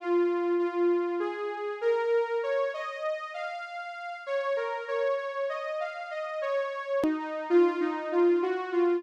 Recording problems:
click at an edit; at 7 s

